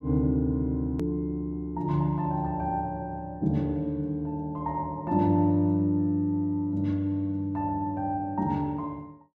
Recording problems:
click at an edit; at 1 s

